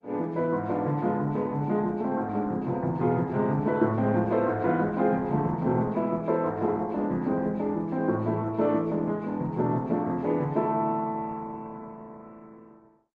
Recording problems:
lossy codec; Opus, log-spectral distance 2 dB

